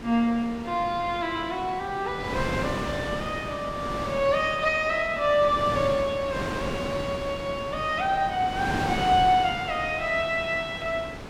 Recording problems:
wind on the microphone; below 1.2 kHz, SNR 8 dB

